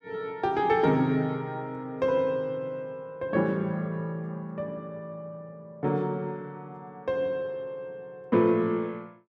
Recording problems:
none

